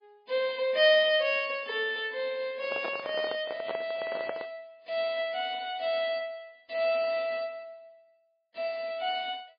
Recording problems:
codec artefacts; MP3, log-spectral distance 3 dB, nothing above 5 kHz
microphone handling noise; from 2.5 to 4.5 s; peak -2 dB vs average level

